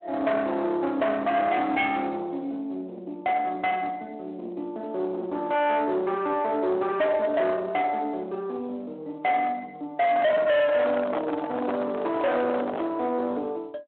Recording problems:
phone line; 260 Hz to 3.9 kHz, Speex
distortion; soft clipping, signal-to-distortion ratio 7 dB
handling noise; from 10 to 13 s; peak -1 dB vs average level

